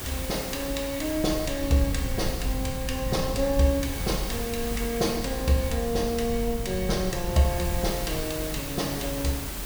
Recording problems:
background hiss; slope -3 dB per octave, SNR 8 dB
rumble; below 96 Hz, SNR 7 dB

